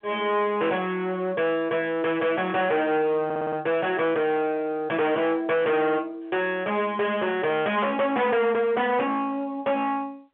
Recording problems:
telephone audio; 240 Hz to 3.2 kHz, G.711
distortion; hard clipping, uneven, signal-to-distortion ratio 7 dB
stutter; at 3.5 s

